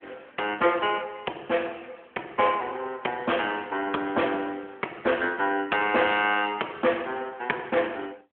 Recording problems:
telephone audio; 300 Hz to 3.4 kHz, AMR-NB

